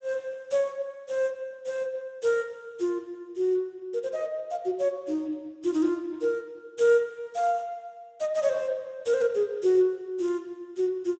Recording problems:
lossy codec; Speex, log-spectral distance 2 dB, nothing above 7.8 kHz

